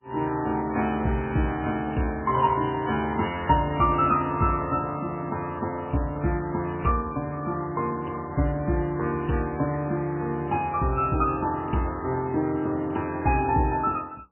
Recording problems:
lossy codec; MP3, log-spectral distance 4 dB, nothing above 2.5 kHz

